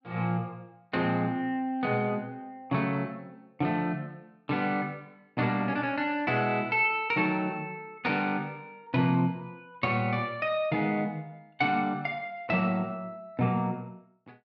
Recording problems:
none

